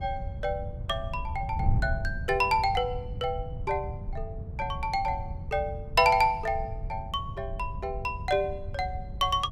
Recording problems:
wind noise; below 110 Hz, SNR 8 dB

